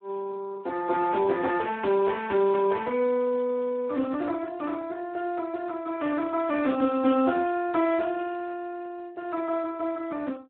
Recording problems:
phone line; 220 Hz to 2.6 kHz, Speex

